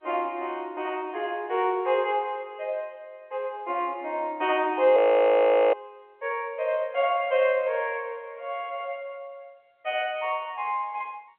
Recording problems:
phone line; 320 Hz to 3.3 kHz, G.711
audio freezing; at 5 s for 1 s

